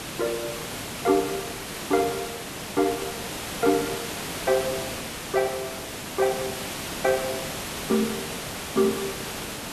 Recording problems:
background hiss; slope -3 dB per octave, SNR 5 dB

